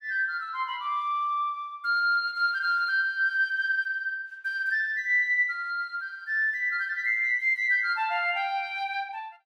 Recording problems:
none

